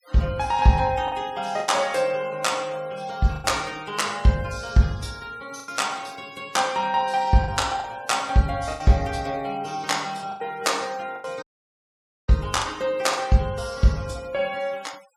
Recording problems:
denoising artefacts; signal-to-artefact ratio 23 dB
packet loss; 5% of the sound replaced, filled with the last packet
audio cutting out; at 11 s for 1 s

